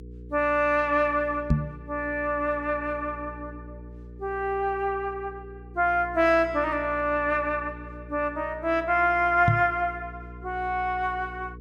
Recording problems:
mains hum; 60 Hz, harmonics up to 480 Hz, SNR 18 dB
microphone thump; at 1.5 s and at 9.5 s; peak +7 dB vs average level

